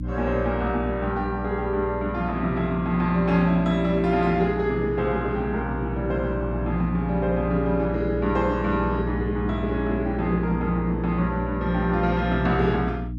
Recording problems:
mains hum; 60 Hz, harmonics up to 300 Hz, SNR 6 dB

